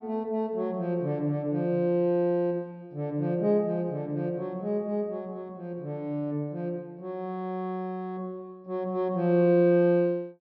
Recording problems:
low-pass filter; nothing above 5.7 kHz

